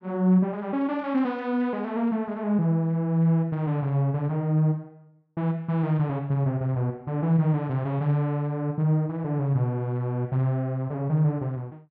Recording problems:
none

